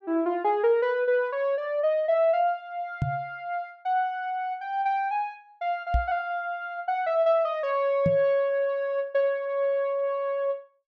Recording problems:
knock on the microphone; at 3 s, at 6 s and at 8 s; peak +4 dB vs average level

